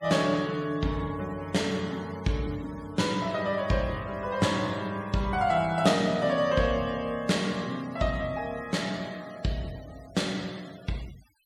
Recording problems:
noise reduction artefacts; signal-to-artefact ratio 21 dB

